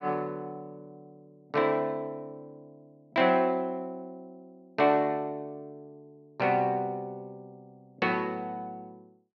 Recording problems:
none

